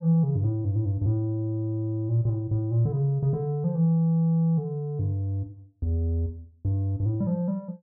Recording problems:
none

